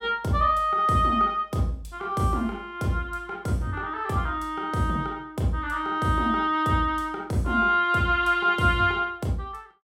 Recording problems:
none

